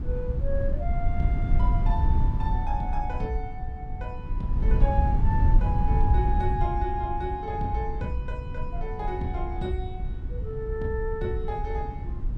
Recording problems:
low-frequency rumble; below 82 Hz, SNR -4 dB

